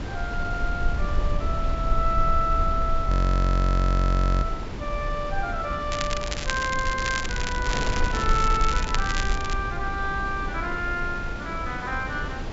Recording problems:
low-pass filter; nothing above 8 kHz
low-frequency rumble; below 52 Hz, SNR 2 dB
wind noise; below 800 Hz, SNR 7 dB
audio freezing; at 3 s for 1.5 s
crackle; from 6 to 9.5 s; loose cable, SNR 5 dB

